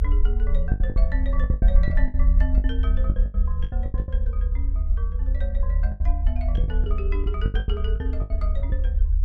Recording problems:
low-frequency rumble; below 68 Hz, SNR -12 dB
packet loss; 14% of the sound replaced, filled with the last packet

